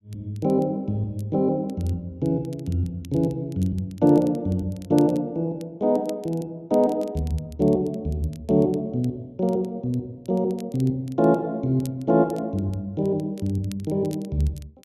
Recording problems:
crackling; vinyl, SNR 27 dB

